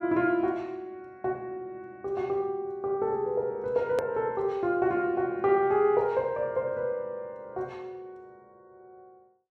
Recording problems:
click at an edit; at 4 s

